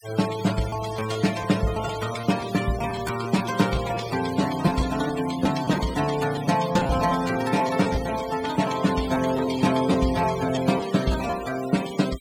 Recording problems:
denoising artefacts; signal-to-artefact ratio 12 dB
packet loss; 6% of the sound replaced, filled with repeated pitch periods

